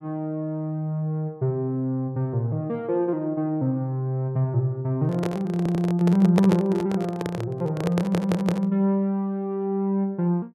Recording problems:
handling noise; from 5 to 8.5 s; peak +4 dB vs average level
audio stuttering; at 5.5 s and at 8 s

